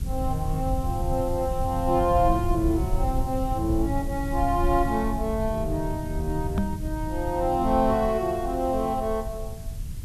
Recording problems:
hiss; slope +1 dB per octave, SNR 21 dB
low-frequency rumble; below 96 Hz, SNR 5 dB
microphone thump; at 6.5 s; peak +4 dB vs average level

